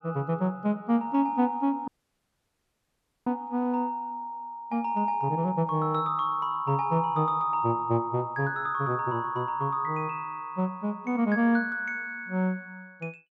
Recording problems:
audio cutting out; at 2 s for 1.5 s

